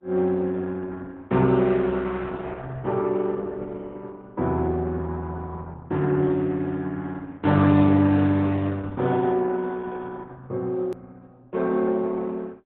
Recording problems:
low-pass filter; nothing above 4 kHz
lossy codec; Opus, log-spectral distance 3 dB
edit click; at 11 s

